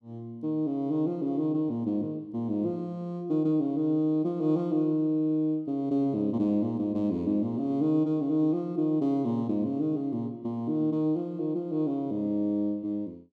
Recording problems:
none

